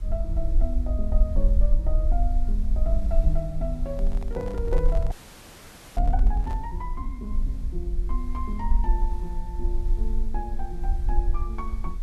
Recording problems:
background hiss; slope -3 dB per octave, SNR 20 dB
low-frequency rumble; below 46 Hz, SNR -7 dB
handling noise; from 4 to 6.5 s; peak -3 dB vs average level
frozen audio; at 5 s for 1 s

